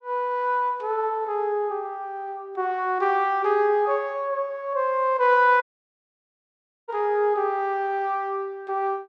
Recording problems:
dropout; at 5.5 s for 1.5 s

